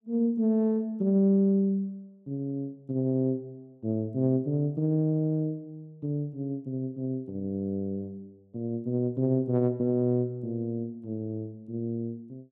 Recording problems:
none

